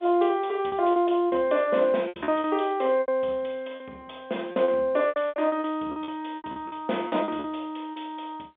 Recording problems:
telephone audio; 260 Hz to 3.6 kHz, G.711
lost packets; 13% of the sound replaced, filled with repeated pitch periods

